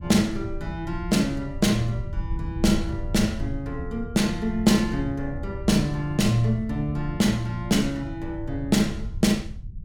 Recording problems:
rumble; below 88 Hz, SNR 11 dB

